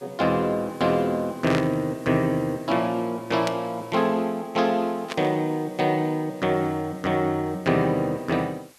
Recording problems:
background hiss; slope -1 dB per octave, SNR 27 dB
static burst; at 1.5 s, at 3.5 s and at 5 s; peak -1 dB vs average level

